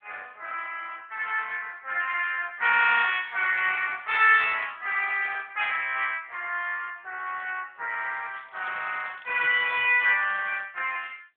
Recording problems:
phone line; 370 Hz to 3.5 kHz, AMR-NB
crackling; from 8.5 to 11 s; loose cable, SNR 27 dB

